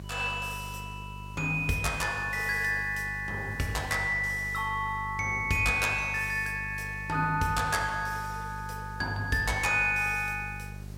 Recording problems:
hum; 50 Hz, harmonics up to 600 Hz, SNR 13 dB
hiss; slope -3 dB per octave, SNR 27 dB

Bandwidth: 16 kHz